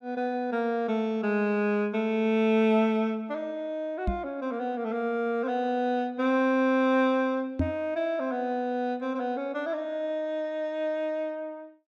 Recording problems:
knock on the microphone; at 4 s and at 7.5 s; peak +4 dB vs average level

